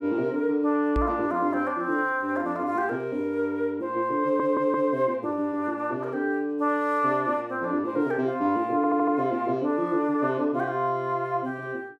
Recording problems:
microphone thump; at 1 s; peak +3 dB vs average level
stutter; at 4 s and at 9 s

